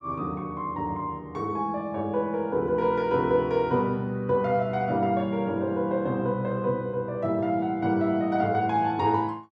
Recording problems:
none

